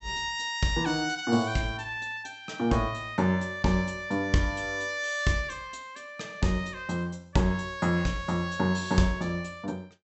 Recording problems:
low-pass filter; nothing above 8 kHz

